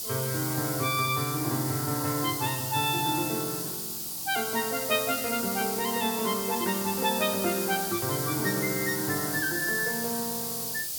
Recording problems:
background hiss; SNR 2 dB

